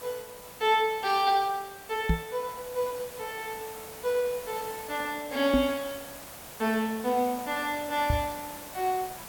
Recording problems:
background hiss; SNR 13 dB
microphone thump; at 2 s, at 5.5 s and at 8 s; peak +7 dB vs average level

